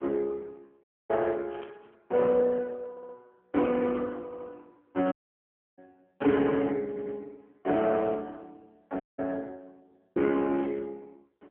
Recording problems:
phone line; 220 Hz to 3.9 kHz, AMR-NB
dropout; at 1 s, at 5 s for 0.5 s and at 9 s
burst of static; at 1.5 s and at 11 s; peak -16 dB vs average level
audio stuttering; at 3 s, at 4.5 s and at 7 s

